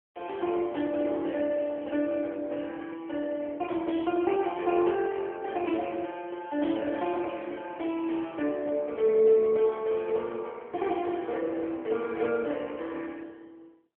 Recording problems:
telephone audio; 240 Hz to 3.5 kHz, AMR-NB

